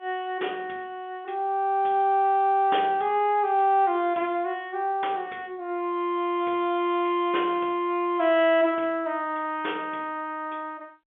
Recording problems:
telephone audio; 260 Hz to 3.6 kHz, G.711

